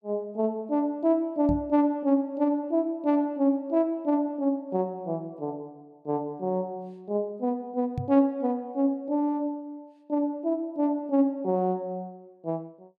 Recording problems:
microphone bump; at 1.5 s and at 8 s; peak 0 dB vs average level

